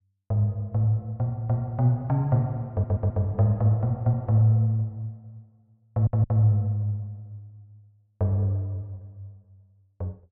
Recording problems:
stutter; at 2.5 s and at 6 s

